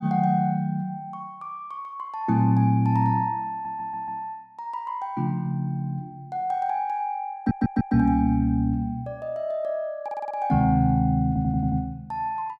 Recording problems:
stutter; 4 times, first at 3.5 s

